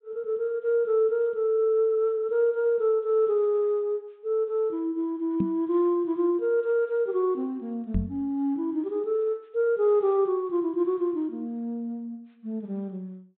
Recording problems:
treble cut off; nothing above 4 kHz
microphone thump; at 5.5 s and at 8 s; peak +3 dB vs average level

